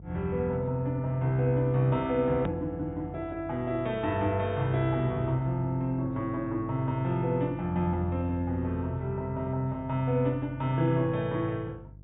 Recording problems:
treble missing; nothing above 4 kHz
hum; 50 Hz, harmonics up to 350 Hz, SNR 18 dB
click at an edit; at 2.5 s

